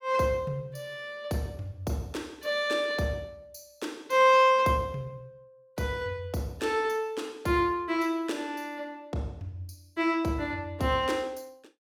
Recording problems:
none

